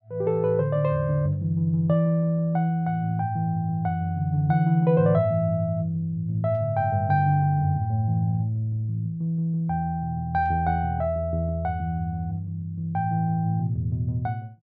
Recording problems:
none

